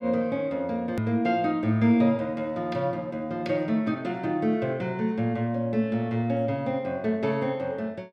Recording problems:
edit click; at 1 s

